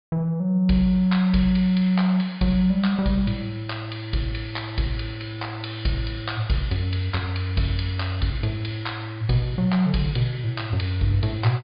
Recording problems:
treble missing; nothing above 4.8 kHz

